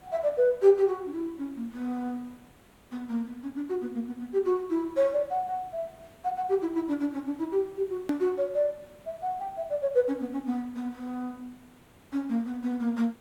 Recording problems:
hiss; SNR 27 dB
edit click; at 8 s

